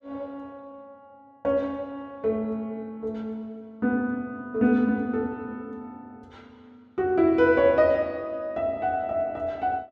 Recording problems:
none

